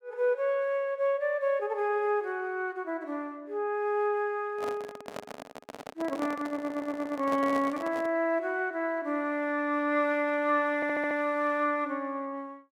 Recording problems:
handling noise; from 4.5 to 8 s; peak -4 dB vs average level
audio stuttering; at 6.5 s and at 11 s

